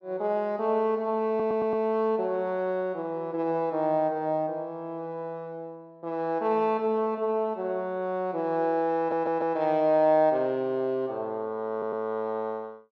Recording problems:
audio stuttering; at 1.5 s, at 9 s and at 12 s

